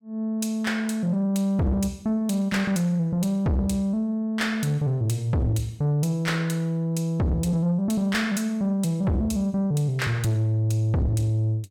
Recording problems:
distortion; soft clipping, signal-to-distortion ratio 7 dB

